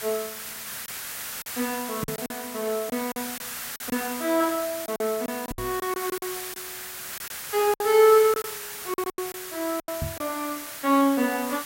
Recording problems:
background hiss; SNR 8 dB
lost packets; 9% of the sound replaced, filled with silence
microphone thump; at 2 s, at 5.5 s and at 10 s; peak -2 dB vs average level

